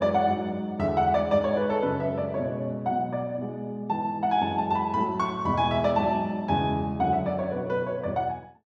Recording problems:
none

